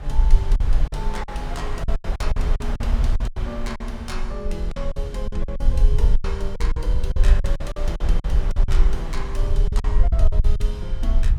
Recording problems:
rumble; below 48 Hz, SNR -9 dB
wind noise; below 1.3 kHz, SNR 5 dB
lost packets; 13% of the sound replaced, filled with silence

